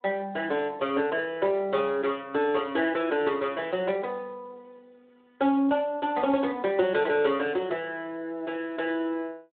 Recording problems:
telephone audio; 240 Hz to 3.6 kHz, Speex

